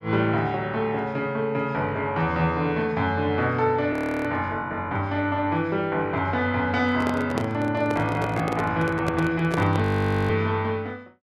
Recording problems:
audio freezing; at 4 s and at 10 s
handling noise; from 7 to 10 s; peak 0 dB vs average level

